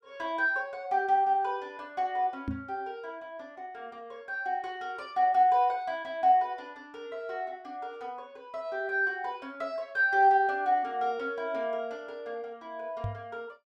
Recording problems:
knock on the microphone; at 2.5 s and at 13 s; peak 0 dB vs average level

